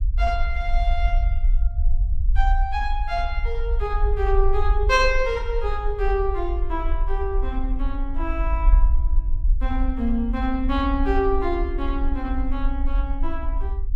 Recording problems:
rumble; below 50 Hz, SNR -1 dB

